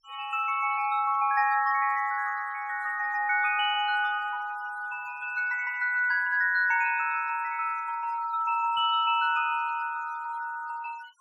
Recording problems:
denoising artefacts; signal-to-artefact ratio 23 dB

